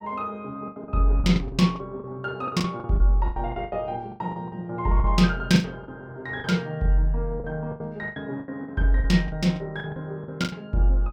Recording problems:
lost packets; 15% of the sound replaced, filled with the last packet

